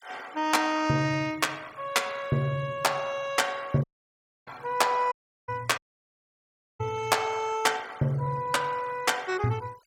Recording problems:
noise reduction artefacts; signal-to-artefact ratio 23 dB
audio cutting out; at 4 s for 0.5 s, at 5 s and at 6 s for 1 s

